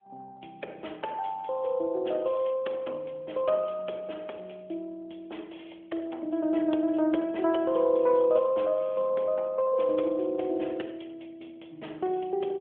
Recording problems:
phone line; 240 Hz to 3.4 kHz, AMR-NB

